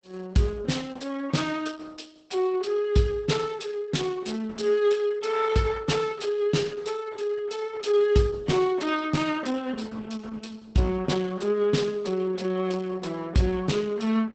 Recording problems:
lossy codec; Opus, log-spectral distance 4 dB, nothing above 8 kHz

